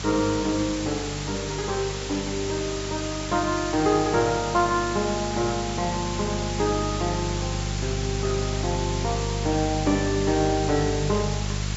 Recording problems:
treble missing; nothing above 8 kHz
hum; 50 Hz, harmonics up to 400 Hz, SNR 6 dB
hiss; slope 0 dB per octave, SNR 7 dB

